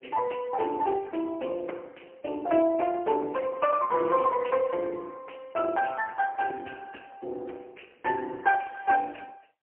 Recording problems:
telephone audio; 260 Hz to 3.1 kHz, AMR-NB, then MP3

